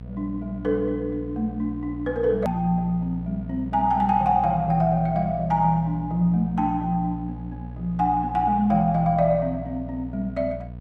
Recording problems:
hum; 60 Hz, harmonics up to 720 Hz, SNR 12 dB
hard cut with a click; at 2.5 s

